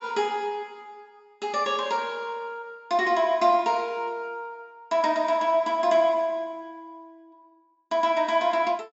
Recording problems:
low-pass filter; nothing above 8 kHz

